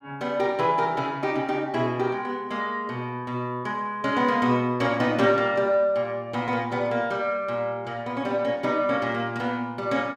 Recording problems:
none

